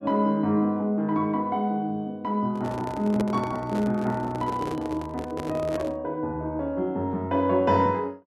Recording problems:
handling noise; from 2.5 to 6 s; peak 0 dB vs average level

